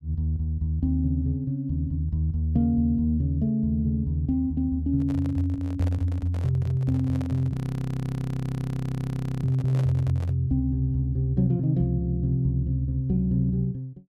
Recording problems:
microphone handling noise; from 5 to 10 s; peak -8 dB vs average level
audio freezing; at 7.5 s for 2 s

